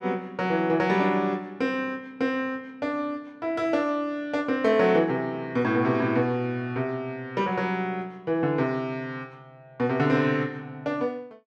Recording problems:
none

